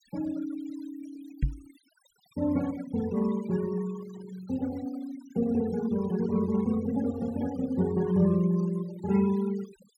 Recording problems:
noise reduction artefacts; signal-to-artefact ratio 19 dB
microphone thump; at 1.5 s; peak +5 dB vs average level

